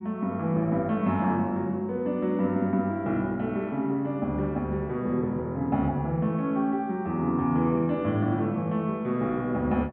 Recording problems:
treble missing; nothing above 4 kHz

